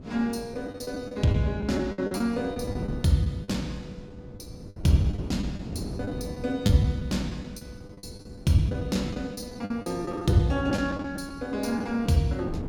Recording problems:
wind noise; below 280 Hz, SNR 12 dB
lost packets; 11% of the sound replaced, filled with the last packet

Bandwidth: 17.5 kHz